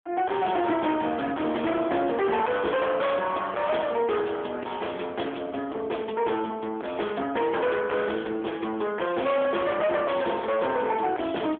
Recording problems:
telephone audio; 240 Hz to 3.4 kHz, AMR-NB
distortion; hard clipping, signal-to-distortion ratio 6 dB

